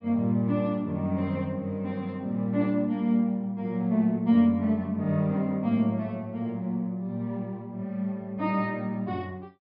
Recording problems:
low-pass filter; nothing above 5.2 kHz

